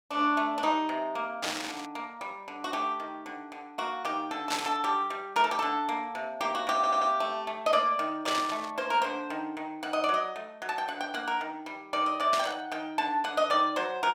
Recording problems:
burst of static; 4 times, first at 1.5 s; peak +2 dB vs average level
stutter; at 7 s

